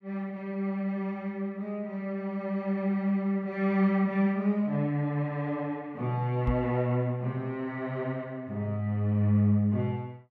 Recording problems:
microphone bump; at 6.5 s; peak +2 dB vs average level

